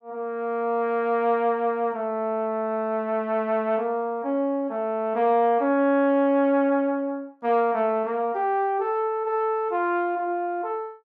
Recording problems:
none

